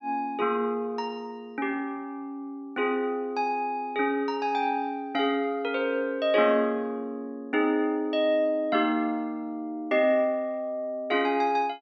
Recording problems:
none

